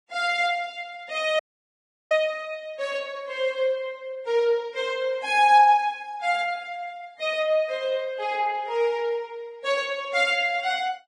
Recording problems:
lossy compression; Vorbis, log-spectral distance 2 dB, nothing above 10.1 kHz
dropout; at 1.5 s for 0.5 s

